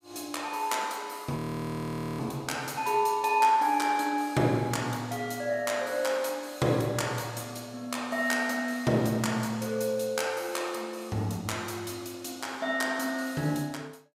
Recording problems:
frozen audio; at 1.5 s for 1 s

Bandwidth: 15.5 kHz